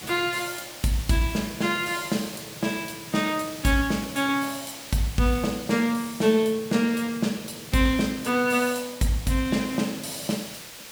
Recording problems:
hiss; slope 0 dB per octave, SNR 13 dB

